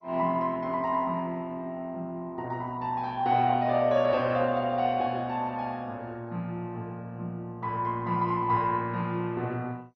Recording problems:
codec artefacts; MP2, log-spectral distance 2 dB, nothing above 4.9 kHz

